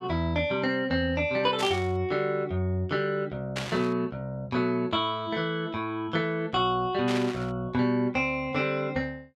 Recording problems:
burst of static; at 1.5 s, at 3.5 s and at 7 s; peak -1 dB vs average level

